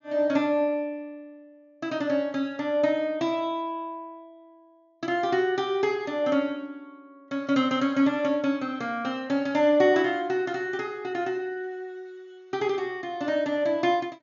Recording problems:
low-pass filter; nothing above 7 kHz

